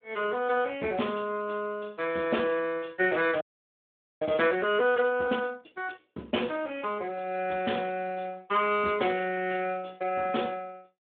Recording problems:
telephone audio; 190 Hz to 3.5 kHz, Speex
frozen audio; at 3.5 s for 1 s

